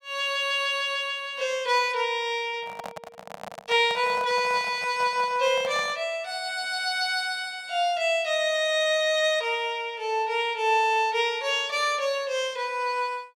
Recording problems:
microphone handling noise; from 2.5 to 6 s; peak -8 dB vs average level

